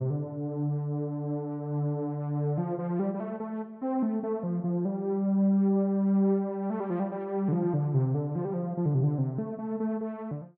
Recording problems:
none

